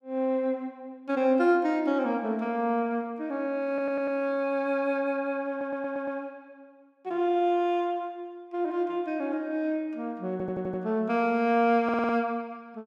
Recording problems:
stutter; 4 times, first at 3.5 s

